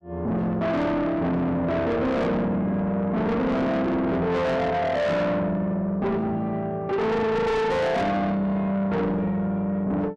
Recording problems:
distorted audio; soft clipping, signal-to-distortion ratio 6 dB

